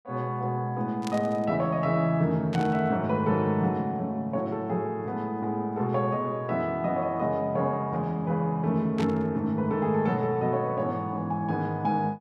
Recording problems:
burst of static; at 1 s, at 2.5 s and at 9 s; peak -6 dB vs average level

